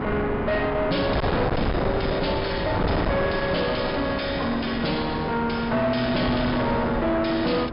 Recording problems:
treble cut off; nothing above 5.5 kHz
distorted audio; soft clipping, signal-to-distortion ratio 5 dB
wind on the microphone; below 740 Hz, SNR 3 dB

